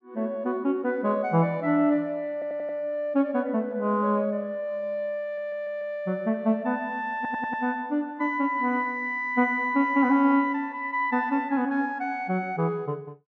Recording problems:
audio stuttering; at 2.5 s, at 5 s and at 7 s

